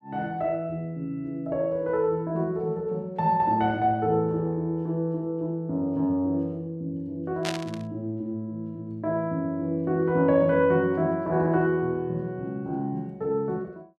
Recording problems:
static burst; at 7.5 s; peak 0 dB vs average level

